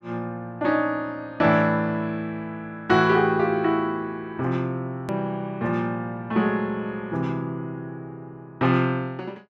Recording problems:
click at an edit; at 5 s

